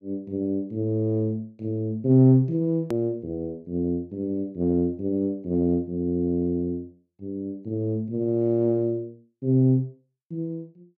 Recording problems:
edit click; at 3 s

